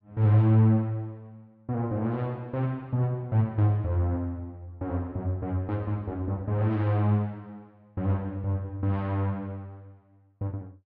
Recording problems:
none

